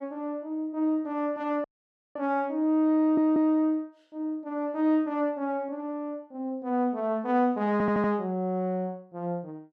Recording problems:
dropout; at 1.5 s for 0.5 s
stutter; at 3 s and at 7.5 s

